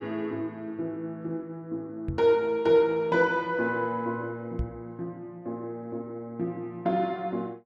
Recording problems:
knock on the microphone; at 2 s and at 4.5 s; peak +2 dB vs average level

